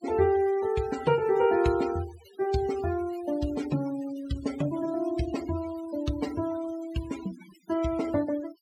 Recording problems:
denoising artefacts; signal-to-artefact ratio 15 dB

